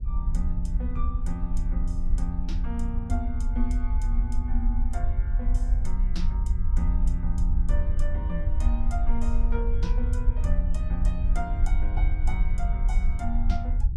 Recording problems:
rumble; below 56 Hz, SNR -9 dB

